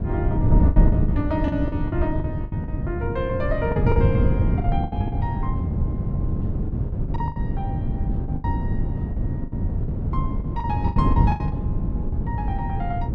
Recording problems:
wind noise; below 150 Hz, SNR -6 dB
lost packets; 12% of the sound replaced, filled with the last packet

